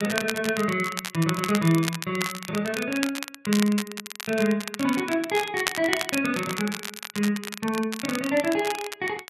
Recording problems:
crackle; vinyl, SNR 7 dB

